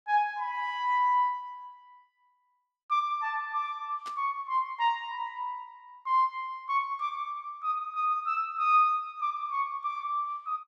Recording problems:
static burst; at 4 s; peak -13 dB vs average level

